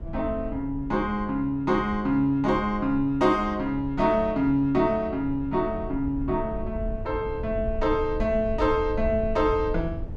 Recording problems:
low-frequency rumble; below 84 Hz, SNR 12 dB

